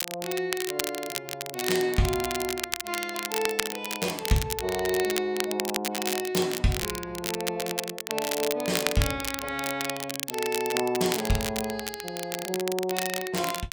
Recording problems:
crackling; vinyl, SNR 3 dB

